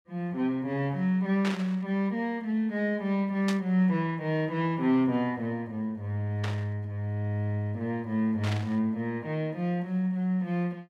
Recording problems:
static burst; 4 times, first at 1.5 s; peak -2 dB vs average level

